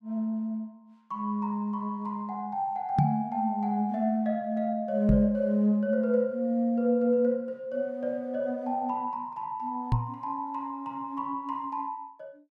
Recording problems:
knock on the microphone; at 3 s, at 5 s and at 10 s; peak +7 dB vs average level

